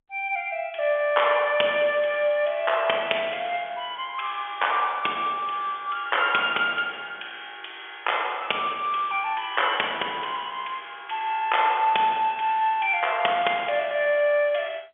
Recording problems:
telephone audio; 300 Hz to 3.4 kHz, G.711

